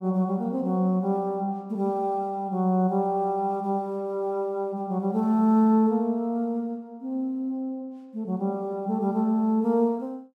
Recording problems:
none

